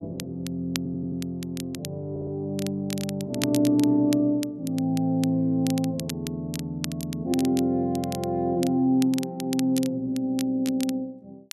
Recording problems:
crackling; vinyl, SNR 13 dB
audio stuttering; at 1 s and at 2 s

